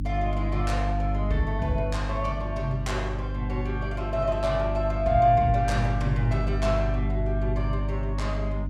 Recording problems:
hum; 50 Hz, harmonics up to 300 Hz, SNR 2 dB

